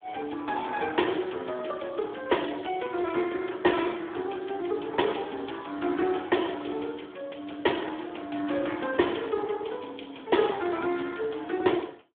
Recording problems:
telephone audio; 240 Hz to 3.5 kHz, Speex

